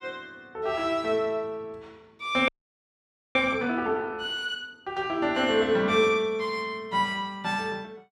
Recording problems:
frozen audio; at 2.5 s for 1 s

